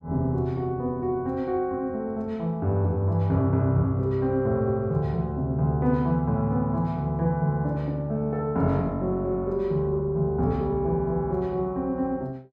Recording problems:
none

